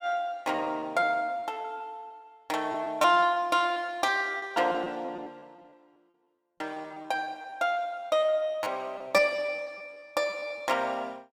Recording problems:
packet loss; 14% of the sound replaced, filled with repeated pitch periods

